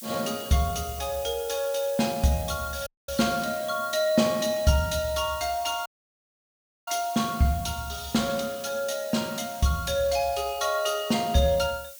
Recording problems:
hiss; SNR 14 dB
audio cutting out; at 3 s and at 6 s for 1 s

